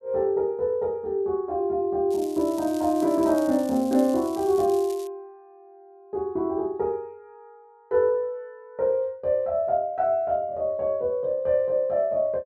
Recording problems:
crackle; from 2 to 5 s; loose cable, SNR 20 dB

